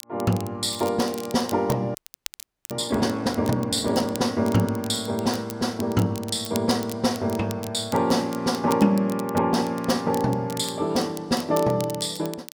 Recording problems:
crackling; vinyl, SNR 16 dB
frozen audio; at 2 s for 1 s

